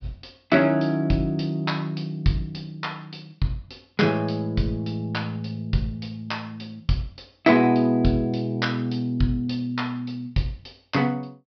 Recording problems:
low-pass filter; nothing above 5.5 kHz

